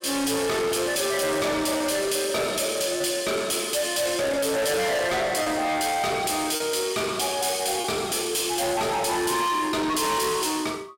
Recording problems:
distortion; soft clipping, signal-to-distortion ratio 6 dB
lost packets; 1.4% of the sound replaced, filled with repeated pitch periods

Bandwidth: 16.5 kHz